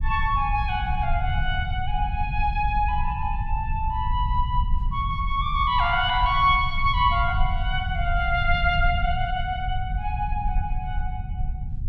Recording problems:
rumble; below 78 Hz, SNR 4 dB

